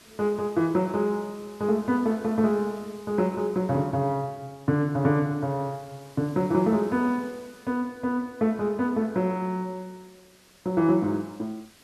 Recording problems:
background hiss; SNR 26 dB

